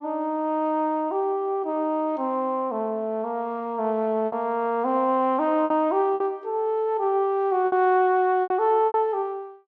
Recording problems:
packet loss; 4% of the sound replaced, filled with repeated pitch periods

